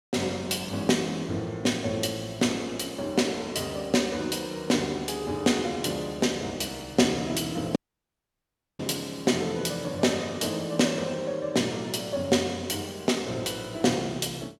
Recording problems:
audio cutting out; at 8 s for 1 s

